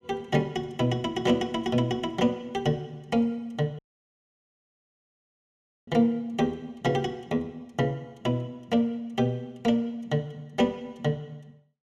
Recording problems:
audio cutting out; at 4 s for 2 s

